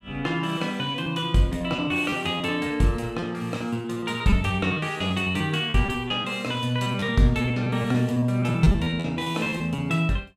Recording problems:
lost packets; 13% of the sound replaced, filled with repeated pitch periods

